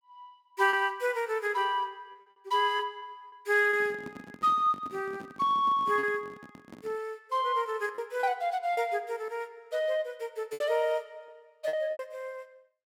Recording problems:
lost packets; 5% of the sound replaced, filled with repeated pitch periods
microphone handling noise; from 3.5 to 7 s; peak -9 dB vs average level

